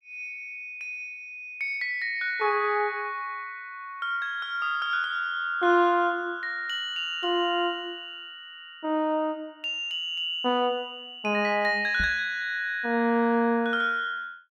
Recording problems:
microphone thump; at 12 s; peak -4 dB vs average level

